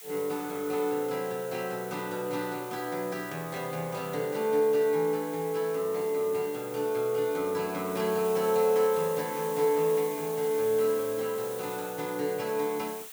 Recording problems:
hiss; SNR 13 dB

